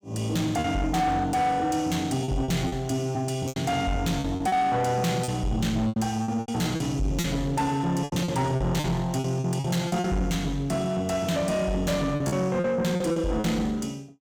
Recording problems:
distorted audio; soft clipping, signal-to-distortion ratio 10 dB
lost packets; 9% of the sound replaced, filled with repeated pitch periods

